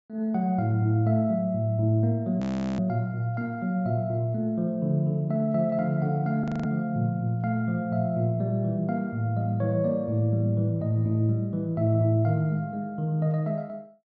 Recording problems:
treble missing; nothing above 8 kHz
frozen audio; at 2.5 s and at 6.5 s

